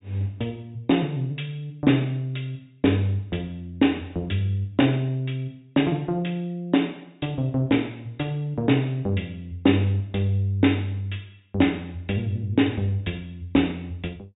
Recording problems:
treble cut off; nothing above 4 kHz

